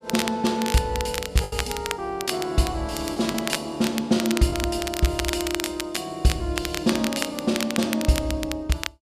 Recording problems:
crackling; vinyl, SNR 6 dB
lost packets; 1.6% of the sound replaced, filled with the last packet

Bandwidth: 14.5 kHz